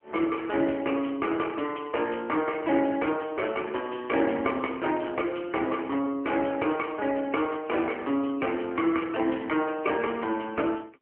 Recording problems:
telephone audio; 240 Hz to 3.2 kHz, AMR-NB

